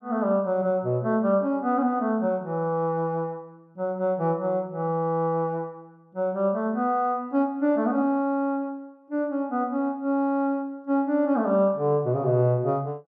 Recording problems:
none

